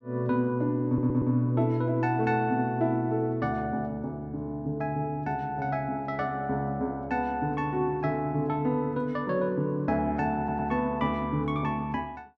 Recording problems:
audio stuttering; at 1 s and at 10 s

